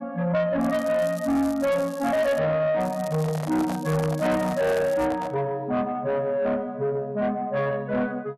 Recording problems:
distorted audio; soft clipping, signal-to-distortion ratio 10 dB
crackling; from 0.5 to 2.5 s and from 3 to 5 s; loose cable, SNR 21 dB
microphone handling noise; from 3 to 5.5 s; peak -5 dB vs average level

